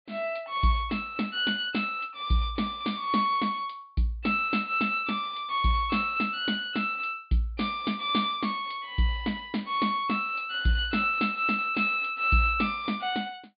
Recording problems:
treble cut off; nothing above 4.7 kHz

